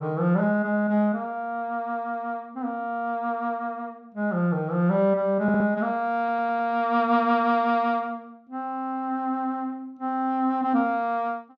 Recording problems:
audio stuttering; at 5.5 s and at 6 s

